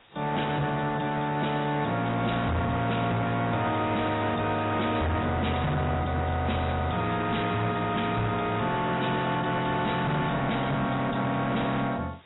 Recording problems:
codec artefacts; AAC, log-spectral distance 11 dB, nothing above 3.9 kHz
distortion; hard clipping, uneven, signal-to-distortion ratio 6 dB
hiss; SNR 26 dB

